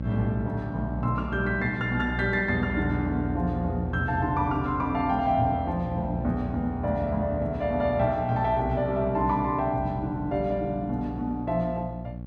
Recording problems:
hum; 60 Hz, harmonics up to 600 Hz, SNR 8 dB

